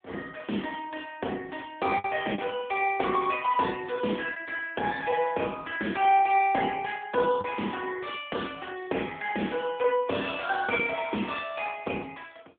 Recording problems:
telephone audio; 240 Hz to 3.5 kHz, AMR-NB
lost packets; 1.4% of the sound replaced, filled with the last packet

